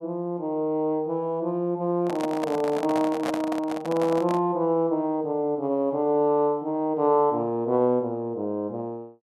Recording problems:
handling noise; from 2 to 4.5 s; peak -1 dB vs average level

